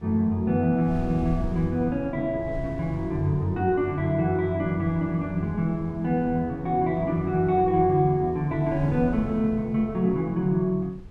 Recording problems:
wind on the microphone; below 110 Hz, SNR 16 dB

